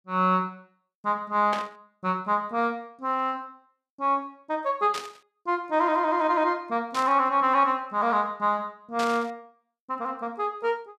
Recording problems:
static burst; 4 times, first at 1.5 s; peak -3 dB vs average level

